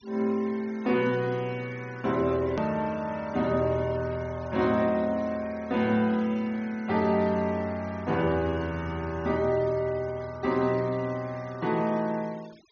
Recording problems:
low-pass filter; nothing above 6.5 kHz
denoising artefacts; signal-to-artefact ratio 23 dB
hard cut with a click; at 2.5 s

